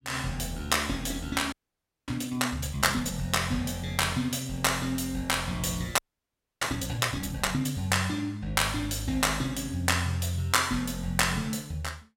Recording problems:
frozen audio; at 1.5 s for 0.5 s and at 6 s for 0.5 s

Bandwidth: 16.5 kHz